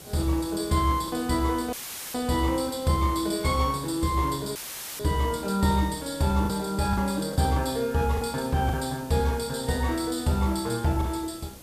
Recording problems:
background hiss; SNR 17 dB
packet loss; 3% of the sound replaced, filled with the last packet
dropout; at 1.5 s and at 4.5 s; filled with static

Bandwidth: 14.5 kHz